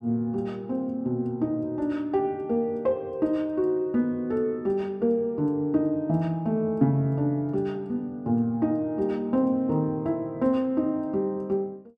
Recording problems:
none

